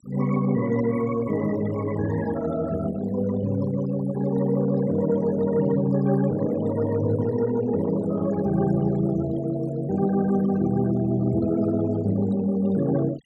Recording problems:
noise reduction artefacts; signal-to-artefact ratio 17 dB

